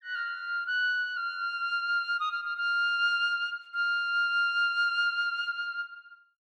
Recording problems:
none

